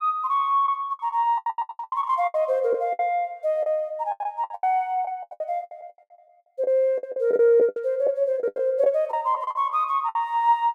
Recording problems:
lost packets; 18% of the sound replaced, filled with the last packet

